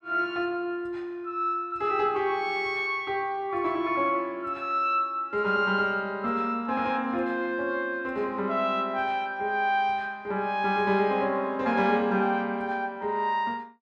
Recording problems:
none

